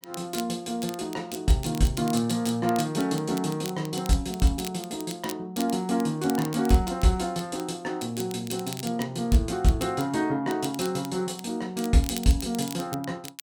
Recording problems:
crackling; vinyl, SNR 15 dB

